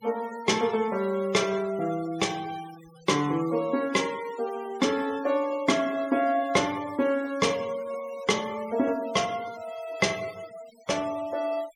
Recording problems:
denoising artefacts; signal-to-artefact ratio 18 dB

